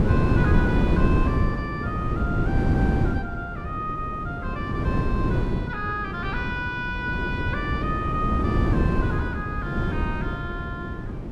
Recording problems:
wind on the microphone; below 270 Hz, SNR -5 dB

